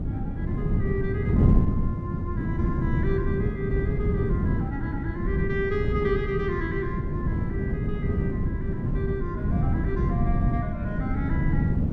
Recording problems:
wind on the microphone; below 190 Hz, SNR -6 dB

